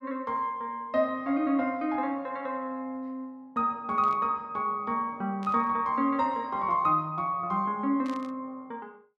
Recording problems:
burst of static; at 4 s, at 5.5 s and at 8 s; peak -14 dB vs average level

